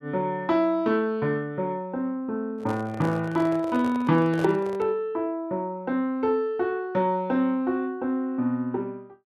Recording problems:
microphone handling noise; from 2.5 to 5 s; peak -4 dB vs average level

